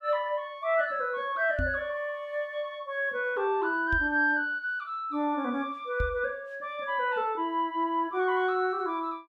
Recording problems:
microphone thump; at 1.5 s, at 4 s and at 6 s; peak 0 dB vs average level

